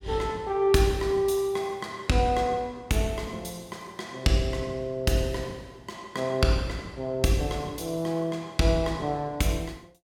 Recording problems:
none

